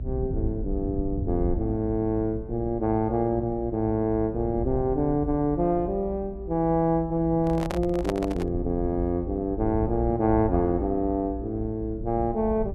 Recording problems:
mains hum; 60 Hz, harmonics up to 720 Hz, SNR 23 dB
low-frequency rumble; below 90 Hz, SNR 10 dB
handling noise; from 7.5 to 8.5 s; peak 0 dB vs average level

